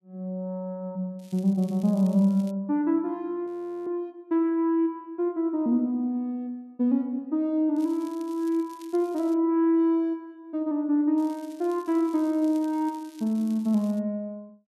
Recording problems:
crackle; from 1 to 2.5 s, from 8 to 9.5 s and from 11 to 14 s; loose cable, SNR 27 dB
audio freezing; at 3.5 s

